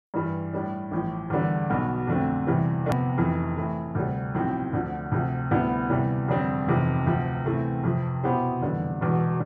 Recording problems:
edit click; at 3 s

